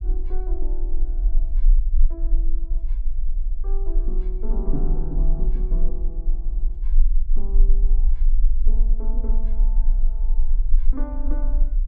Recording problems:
rumble; below 34 Hz, strongest tone 20 Hz, SNR -13 dB

